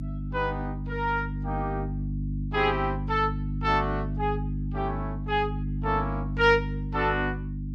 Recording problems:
electrical hum; 50 Hz, harmonics up to 300 Hz, SNR 4 dB

